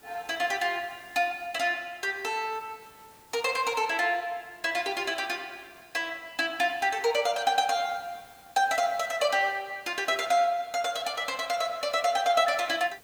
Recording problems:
hiss; slope -3 dB per octave, SNR 27 dB

